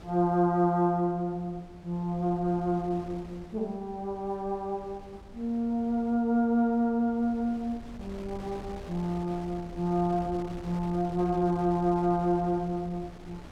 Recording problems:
wind on the microphone; below 460 Hz, SNR 18 dB

